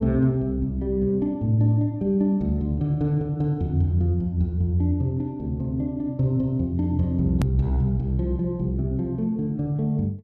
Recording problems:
edit click; at 7.5 s

